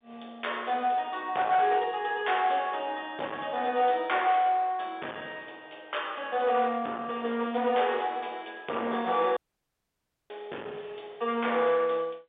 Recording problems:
phone line; 280 Hz to 3.6 kHz, G.711
distorted audio; hard clipping, uneven, signal-to-distortion ratio 11 dB
audio cutting out; at 9.5 s for 1 s

